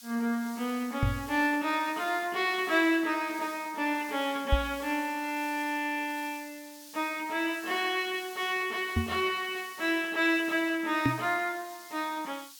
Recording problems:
background hiss; slope +7 dB per octave, SNR 18 dB
microphone bump; 4 times, first at 1 s; peak +7 dB vs average level

